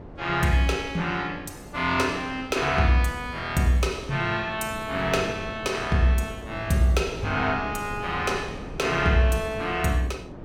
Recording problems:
wind on the microphone; below 450 Hz, SNR 14 dB

